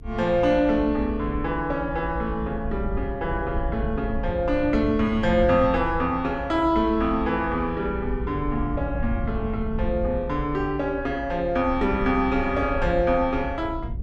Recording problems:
low-frequency rumble; below 84 Hz, SNR 9 dB

